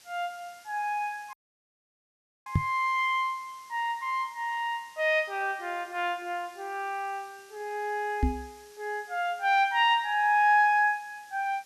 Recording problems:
background hiss; slope +1 dB per octave, SNR 26 dB
audio cutting out; at 1.5 s for 1 s
microphone thump; at 2.5 s and at 8 s; peak +6 dB vs average level

